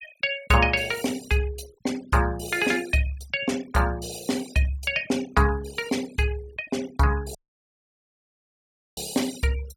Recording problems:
noise reduction artefacts; signal-to-artefact ratio 17 dB
audio cutting out; at 7.5 s for 1.5 s

